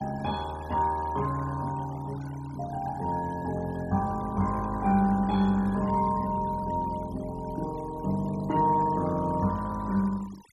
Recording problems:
noise reduction artefacts; signal-to-artefact ratio 20 dB

